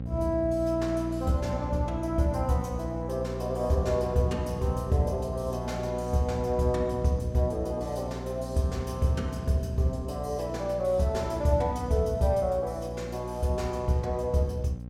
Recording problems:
electrical hum; 60 Hz, harmonics up to 600 Hz, SNR 8 dB

